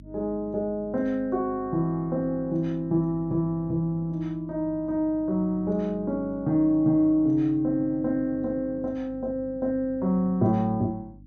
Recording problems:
hum; 50 Hz, harmonics up to 300 Hz, SNR 22 dB

